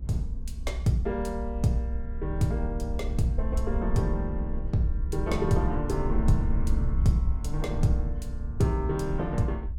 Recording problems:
low-frequency rumble; below 62 Hz, SNR 3 dB

